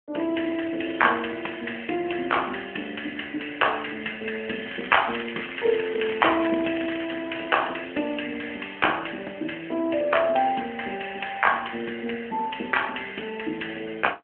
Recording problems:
phone line; 240 Hz to 3.3 kHz, AMR-NB
crackling; from 4.5 to 7 s; loose cable, SNR 11 dB

